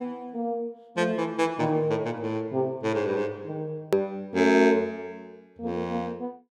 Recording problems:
click at an edit; at 4 s

